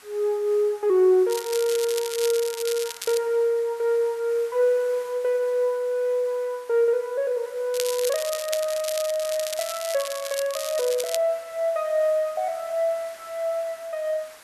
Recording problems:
background hiss; SNR 22 dB
crackling; from 1.5 to 3 s and from 7.5 to 11 s; loose cable, SNR 8 dB

